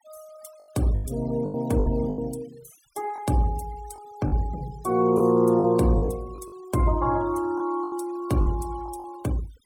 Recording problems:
noise reduction artefacts; signal-to-artefact ratio 22 dB
packet loss; 9% of the sound replaced, filled with the last packet

